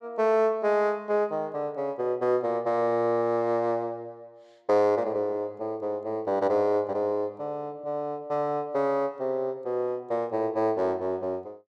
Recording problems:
none

